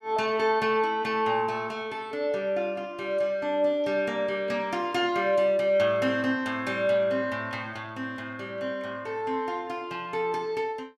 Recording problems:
none

